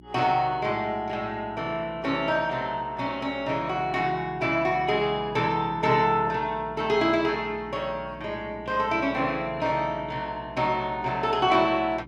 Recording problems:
mains hum; 60 Hz, harmonics up to 360 Hz, SNR 20 dB

